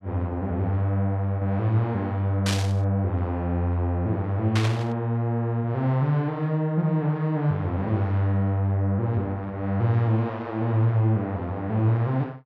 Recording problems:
burst of static; at 2.5 s and at 4.5 s; peak +1 dB vs average level

